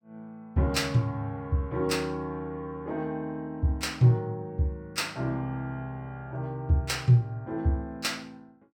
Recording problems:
none

